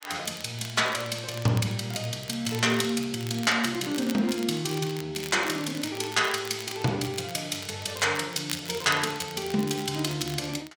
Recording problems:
crackle; vinyl, SNR 15 dB

